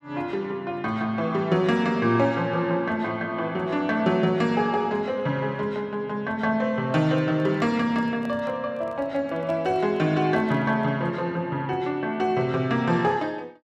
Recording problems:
microphone handling noise; from 7 to 11 s; peak -11 dB vs average level

